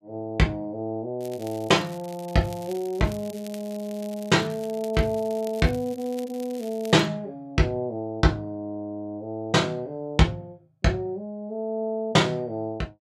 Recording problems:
crackle; from 1 to 7 s; loose cable, SNR 21 dB

